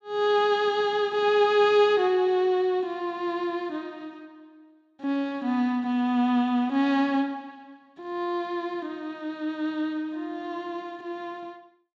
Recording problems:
none

